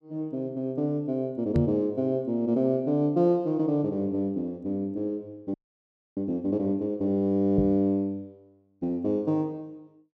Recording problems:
knock on the microphone; at 1.5 s and at 7.5 s; peak +5 dB vs average level
frozen audio; at 5.5 s for 0.5 s

